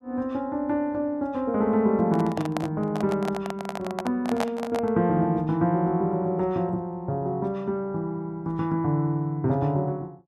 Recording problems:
microphone handling noise; from 2 to 5 s; peak +2 dB vs average level

